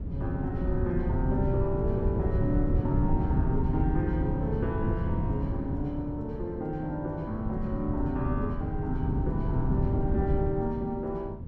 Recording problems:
wind on the microphone; below 150 Hz, SNR -1 dB

